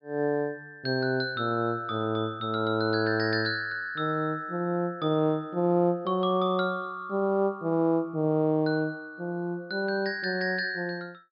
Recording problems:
treble missing; nothing above 5.5 kHz

